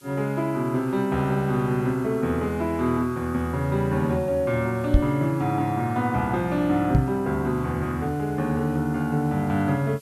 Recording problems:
background hiss; SNR 27 dB
microphone bump; at 5 s and at 7 s; peak +9 dB vs average level

